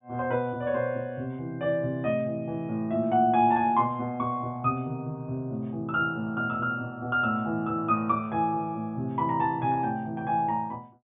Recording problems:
low-pass filter; nothing above 3.6 kHz

